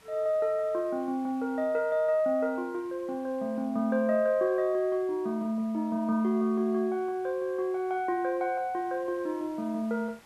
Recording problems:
background hiss; slope -3 dB per octave, SNR 28 dB

